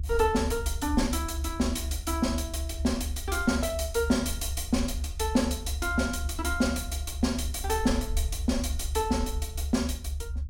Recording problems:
low-frequency rumble; below 74 Hz, strongest tone 72 Hz, SNR 5 dB

